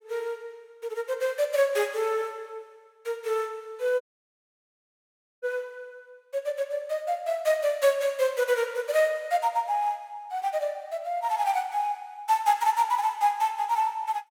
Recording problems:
audio cutting out; at 4 s for 1.5 s

